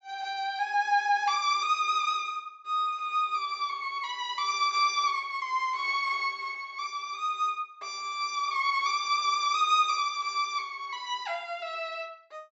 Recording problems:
treble cut off; nothing above 8 kHz

